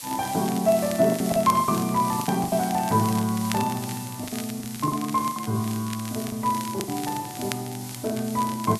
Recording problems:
background hiss; slope +3 dB per octave, SNR 12 dB
crackle; vinyl, SNR 15 dB
lost packets; 9% of the sound replaced, filled with the last packet

